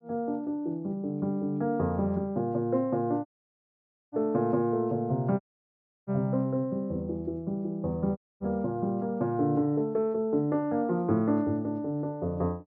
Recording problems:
dropout; at 3.5 s for 1 s, at 5.5 s for 0.5 s and at 8 s

